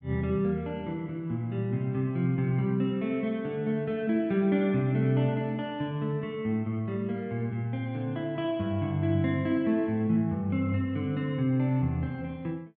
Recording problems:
none

